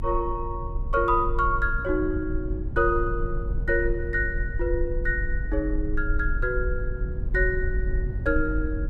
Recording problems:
rumble; below 58 Hz, strongest tone 24 Hz, SNR 3 dB

